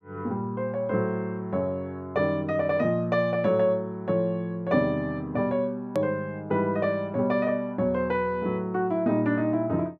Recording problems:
hard cut with a click; at 6 s

